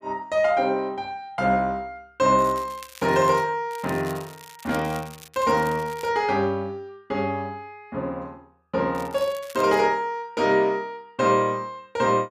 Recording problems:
crackle; from 2.5 to 3.5 s, from 3.5 to 6 s and at 9 s; loose cable, SNR 20 dB

